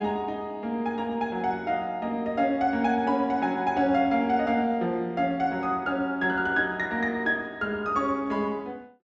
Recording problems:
treble missing; nothing above 8 kHz

